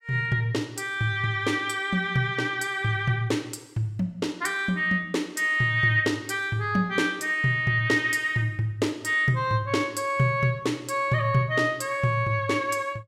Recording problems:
none

